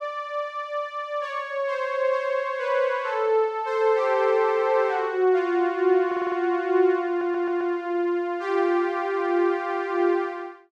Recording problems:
audio stuttering; at 6 s and at 7 s

